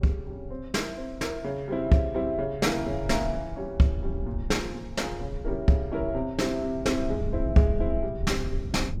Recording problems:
low-frequency rumble; below 84 Hz, SNR 9 dB

